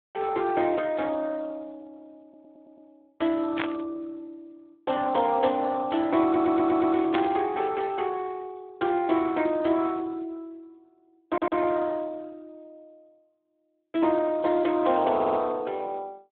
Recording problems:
phone line; 300 Hz to 3.7 kHz, Speex
audio stuttering; 4 times, first at 2 s
burst of static; at 3.5 s and at 7 s; peak +1 dB vs average level

